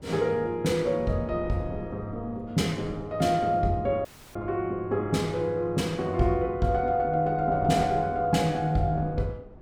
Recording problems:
wind noise; below 350 Hz, SNR 18 dB
dropout; at 4 s

